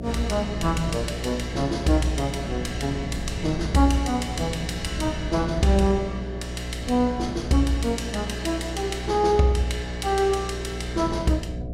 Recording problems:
electrical hum; 60 Hz, harmonics up to 720 Hz, SNR 8 dB
wind noise; below 190 Hz, SNR 13 dB

